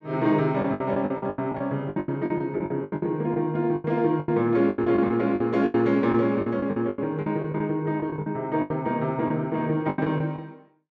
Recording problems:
lost packets; 17% of the sound replaced, filled with the last packet

